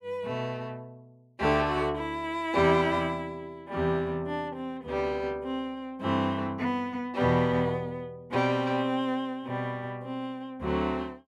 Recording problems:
none

